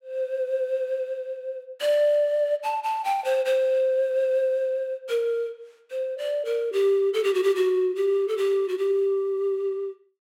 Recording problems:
none

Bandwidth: 16 kHz